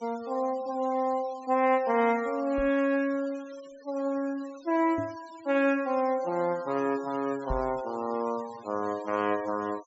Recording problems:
low-pass filter; nothing above 8 kHz
noise reduction artefacts; signal-to-artefact ratio 22 dB
microphone thump; at 2.5 s, at 5 s and at 7.5 s; peak -2 dB vs average level

